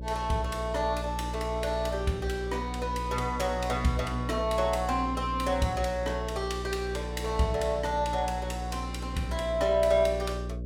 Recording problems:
mains hum; 60 Hz, harmonics up to 600 Hz, SNR 7 dB

